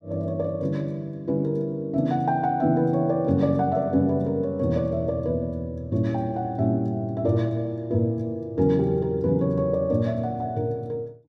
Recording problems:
none

